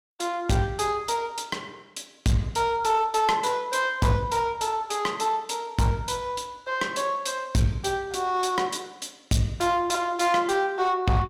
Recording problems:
distorted audio; hard clipping, uneven, signal-to-distortion ratio 11 dB

